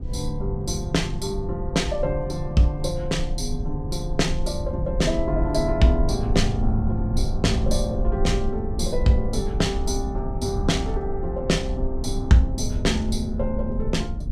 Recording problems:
rumble; below 78 Hz, SNR 4 dB

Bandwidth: 15 kHz